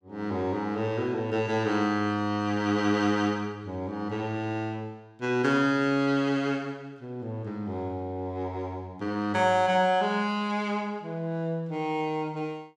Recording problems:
none

